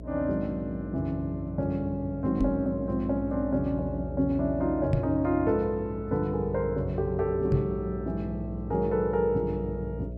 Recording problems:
mains hum; 60 Hz, harmonics up to 660 Hz, SNR 11 dB
microphone thump; at 2.5 s, at 5 s and at 7.5 s; peak +5 dB vs average level

